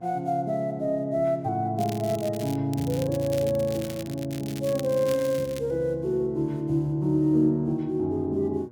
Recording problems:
electrical hum; 60 Hz, harmonics up to 1.1 kHz, SNR 24 dB
crackling; at 2 s and from 2.5 to 5.5 s; loose cable, SNR 16 dB

